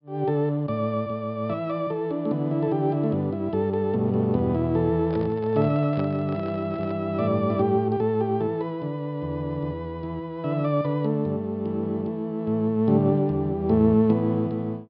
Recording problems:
treble missing; nothing above 5.5 kHz
handling noise; from 5 to 7 s; peak -8 dB vs average level

